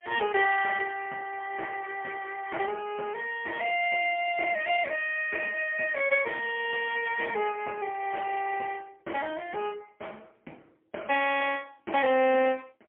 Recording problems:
telephone audio; 240 Hz to 3.1 kHz, AMR-NB, then MP3

